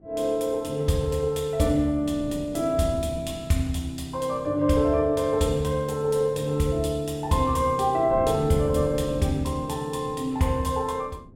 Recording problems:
wind on the microphone; below 280 Hz, SNR 17 dB

